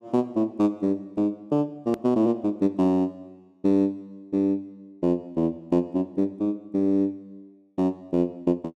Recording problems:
click at an edit; at 2 s

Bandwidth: 13 kHz